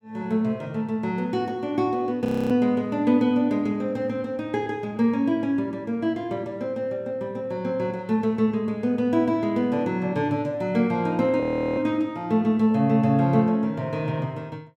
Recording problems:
frozen audio; at 2.5 s and at 11 s

